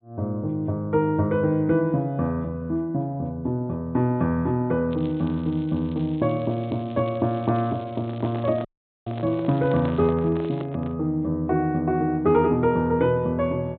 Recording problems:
treble cut off; nothing above 4 kHz
crackle; from 5 to 10 s and at 10 s; loose cable, SNR 27 dB
handling noise; from 8 to 11 s; peak -7 dB vs average level
dropout; at 8.5 s

